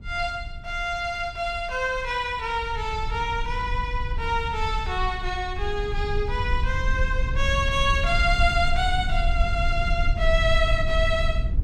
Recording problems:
rumble; below 64 Hz, SNR 3 dB

